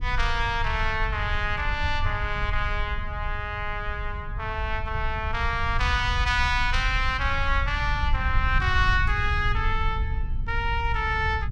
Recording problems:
low-frequency rumble; below 76 Hz, SNR 4 dB

